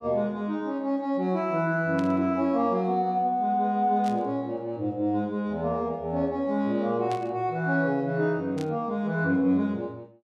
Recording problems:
static burst; 4 times, first at 2 s; peak -11 dB vs average level

